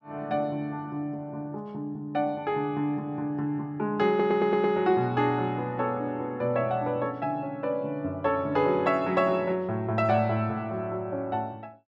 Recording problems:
stutter; at 4 s

